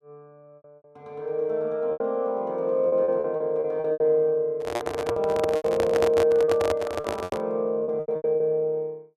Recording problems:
packet loss; 12% of the sound replaced, filled with repeated pitch periods
microphone handling noise; from 4.5 to 7.5 s; peak +2 dB vs average level

